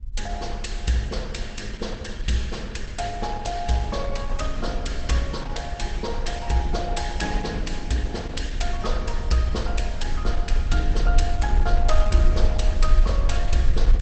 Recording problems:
lossy compression; Opus, log-spectral distance 4 dB, nothing above 8.2 kHz
low-frequency rumble; below 48 Hz, SNR 0 dB

